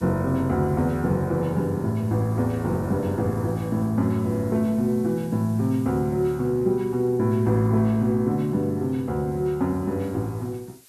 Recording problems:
background hiss; SNR 27 dB

